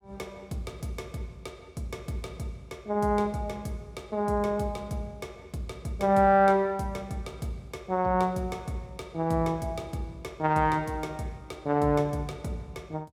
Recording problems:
none

